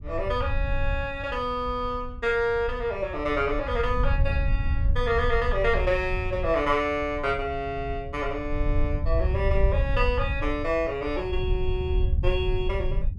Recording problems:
low-frequency rumble; below 78 Hz, SNR 3 dB

